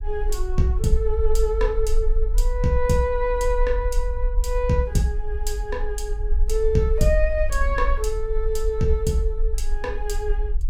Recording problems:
rumble; below 46 Hz, SNR 2 dB

